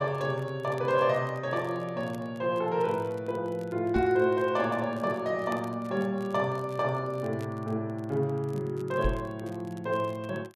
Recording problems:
crackle; vinyl, SNR 28 dB
knock on the microphone; at 4 s and at 9 s; peak +3 dB vs average level

